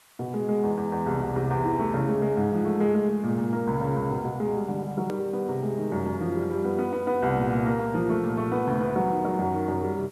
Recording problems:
background hiss; SNR 29 dB
click at an edit; at 5 s

